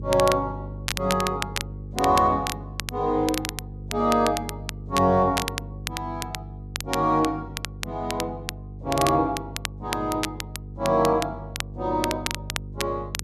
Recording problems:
hum; 50 Hz, harmonics up to 500 Hz, SNR 13 dB
crackle; vinyl, SNR 8 dB

